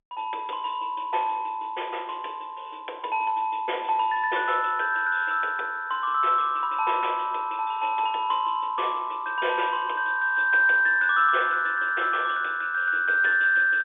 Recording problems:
telephone audio; 300 Hz to 3.6 kHz, G.711

